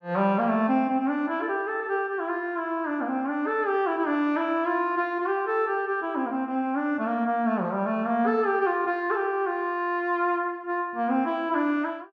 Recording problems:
none

